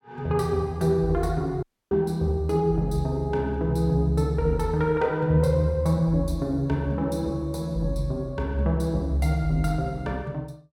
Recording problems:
audio cutting out; at 1.5 s

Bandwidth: 17 kHz